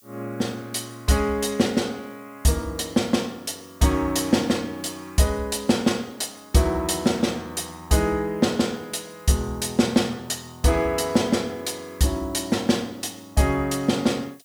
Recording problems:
hiss; slope +1 dB per octave, SNR 29 dB

